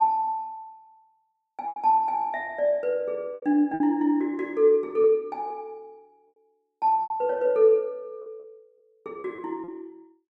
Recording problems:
packet loss; 7% of the sound replaced, filled with repeated pitch periods

